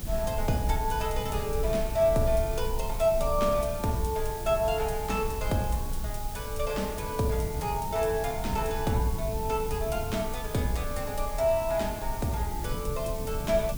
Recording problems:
background hiss; slope +1 dB per octave, SNR 12 dB
rumble; below 56 Hz, strongest tone 22 Hz, SNR 10 dB
wind noise; below 170 Hz, SNR 10 dB

